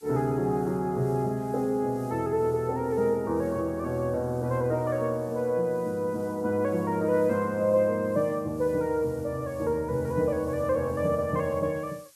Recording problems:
hiss; slope +2 dB per octave, SNR 27 dB

